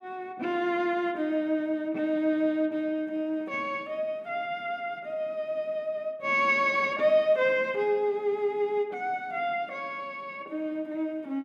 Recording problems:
none

